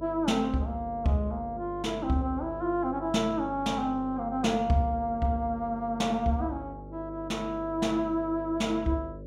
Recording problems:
hum; 50 Hz, harmonics up to 600 Hz, SNR 14 dB

